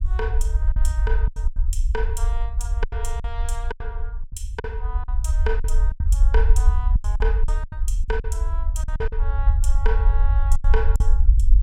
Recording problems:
rumble; below 56 Hz, SNR -10 dB
packet loss; 11% of the sound replaced, filled with silence

